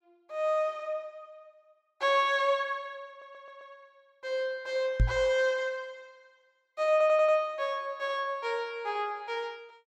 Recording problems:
stutter; at 3 s and at 7 s
microphone thump; at 5 s; peak +7 dB vs average level

